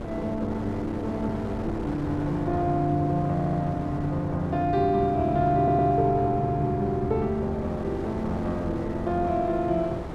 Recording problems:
wind noise; below 600 Hz, SNR 10 dB
stutter; at 3.5 s and at 5.5 s

